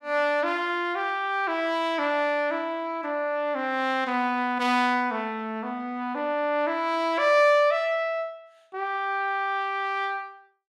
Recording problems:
none

